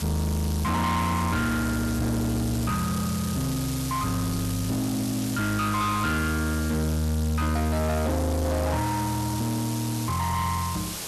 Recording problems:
distorted audio; soft clipping, signal-to-distortion ratio 7 dB
background hiss; slope -1 dB per octave, SNR 8 dB

